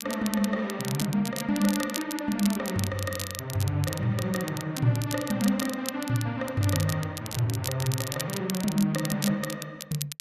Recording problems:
crackling; vinyl, SNR 8 dB

